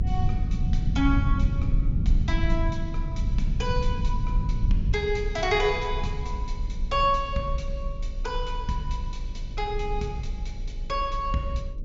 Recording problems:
treble cut off; nothing above 7.4 kHz
hum; 50 Hz, harmonics up to 600 Hz, SNR 21 dB
rumble; below 92 Hz, strongest tone 28 Hz, SNR 0 dB

